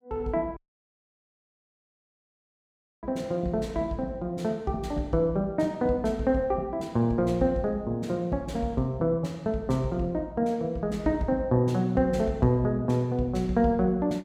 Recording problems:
dropout; at 0.5 s for 2.5 s

